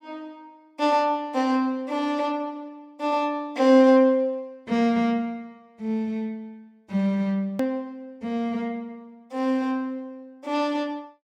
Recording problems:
edit click; at 7.5 s

